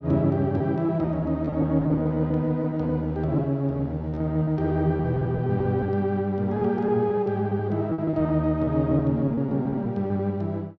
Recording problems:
packet loss; 11% of the sound replaced, filled with repeated pitch periods

